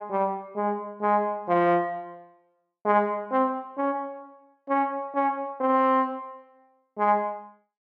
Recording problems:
none

